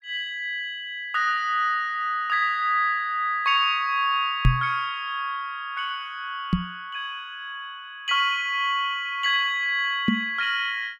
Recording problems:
microphone bump; at 4.5 s, at 6.5 s and at 10 s; peak +8 dB vs average level

